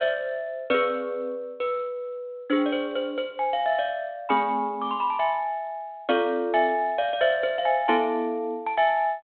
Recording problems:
phone line; 220 Hz to 3.6 kHz, G.726

